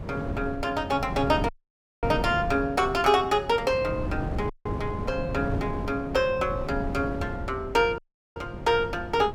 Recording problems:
wind noise; below 280 Hz, SNR 8 dB
dropout; at 1.5 s for 0.5 s, at 4.5 s and at 8 s

